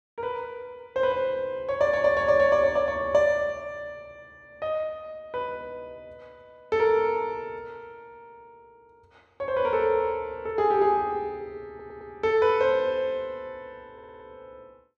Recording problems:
audio stuttering; at 12 s and at 14 s

